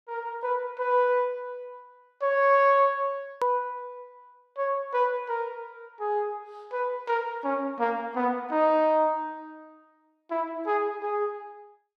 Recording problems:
edit click; at 3.5 s

